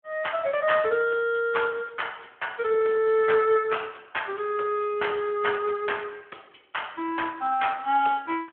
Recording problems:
telephone audio; 280 Hz to 3.3 kHz, Speex

